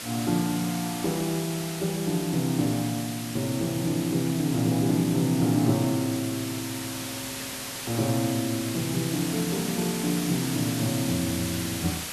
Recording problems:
background hiss; slope 0 dB per octave, SNR 7 dB

